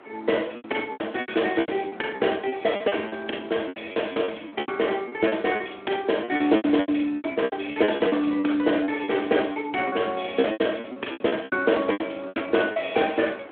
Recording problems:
telephone audio; 240 Hz to 3.4 kHz, Speex
wind on the microphone; below 1.3 kHz, SNR 23 dB
lost packets; 18% of the sound replaced, filled with repeated pitch periods

